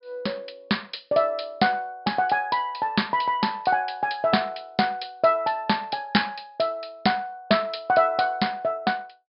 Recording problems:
low-pass filter; nothing above 5.5 kHz

